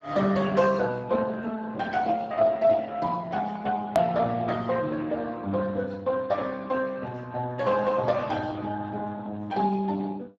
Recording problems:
lossy compression; Speex, log-spectral distance 3 dB, nothing above 13.1 kHz
edit click; at 4 s

